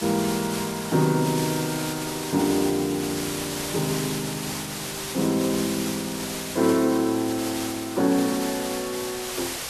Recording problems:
background hiss; slope -1 dB per octave, SNR 6 dB

